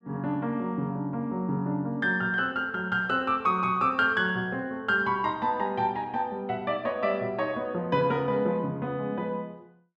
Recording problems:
none

